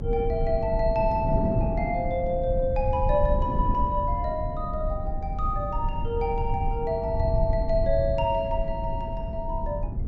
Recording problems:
low-pass filter; nothing above 8 kHz
low-frequency rumble; below 78 Hz, SNR 4 dB
wind noise; below 270 Hz, SNR 8 dB

